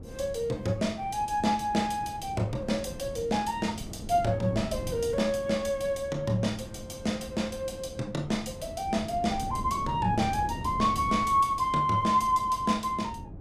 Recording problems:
wind noise; below 250 Hz, SNR 13 dB

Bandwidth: 15 kHz